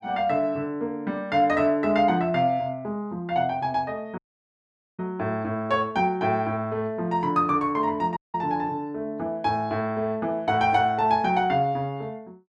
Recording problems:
dropout; at 4 s for 1 s and at 8 s

